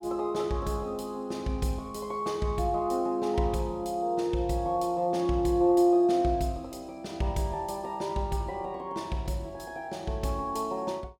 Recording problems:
none

